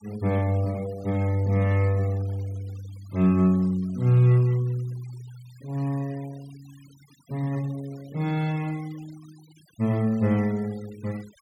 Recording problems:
denoising artefacts; signal-to-artefact ratio 25 dB

